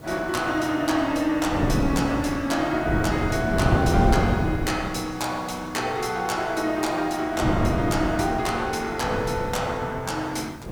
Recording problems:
hiss; slope -2 dB per octave, SNR 27 dB
wind noise; below 360 Hz, SNR 2 dB

